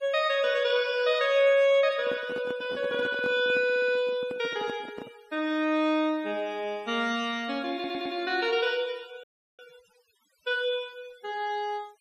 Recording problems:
denoising artefacts; signal-to-artefact ratio 27 dB
handling noise; from 2 to 5 s; peak -8 dB vs average level
audio stuttering; at 3.5 s and at 7.5 s
dropout; at 9 s

